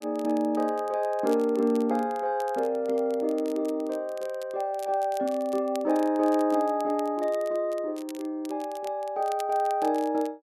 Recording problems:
crackling; vinyl, SNR 23 dB

